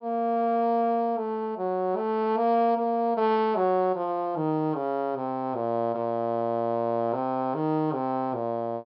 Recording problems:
low-pass filter; nothing above 5.4 kHz

